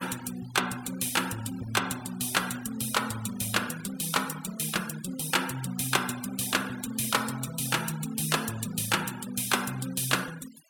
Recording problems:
denoising artefacts; signal-to-artefact ratio 15 dB

